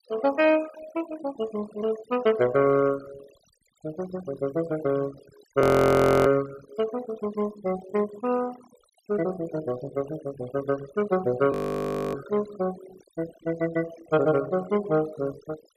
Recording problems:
denoising artefacts; signal-to-artefact ratio 17 dB
frozen audio; at 5.5 s for 0.5 s and at 12 s for 0.5 s

